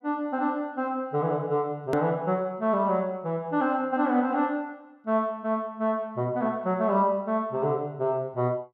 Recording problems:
click at an edit; at 2 s

